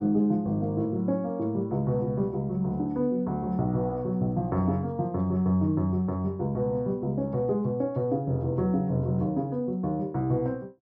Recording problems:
none

